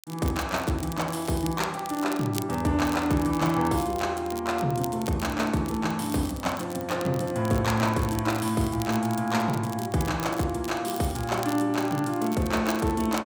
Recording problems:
crackling; vinyl, SNR 15 dB

